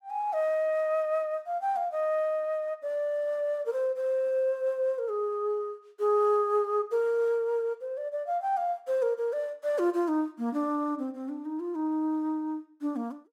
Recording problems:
none

